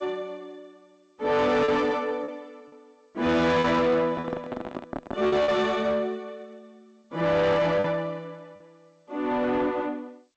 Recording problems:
lossy compression; G.722, log-spectral distance 2 dB
distorted audio; soft clipping, signal-to-distortion ratio 8 dB
lost packets; 4% of the sound replaced, filled with repeated pitch periods
handling noise; from 4 to 5.5 s; peak -4 dB vs average level

